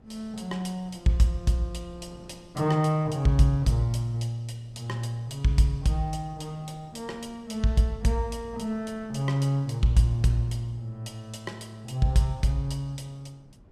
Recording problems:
wind noise; below 300 Hz, SNR 27 dB

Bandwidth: 14.5 kHz